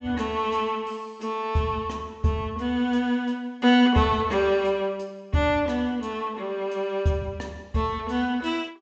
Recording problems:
treble missing; nothing above 8 kHz

